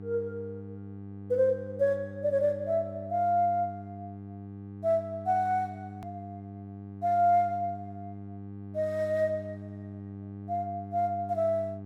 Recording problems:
hum; 50 Hz, harmonics up to 800 Hz, SNR 13 dB
hard cut with a click; at 6 s

